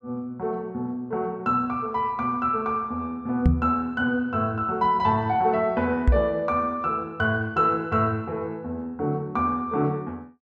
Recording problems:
knock on the microphone; at 3.5 s and at 6 s; peak +9 dB vs average level

